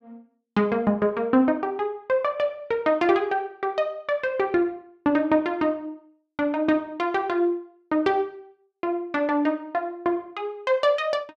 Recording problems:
none

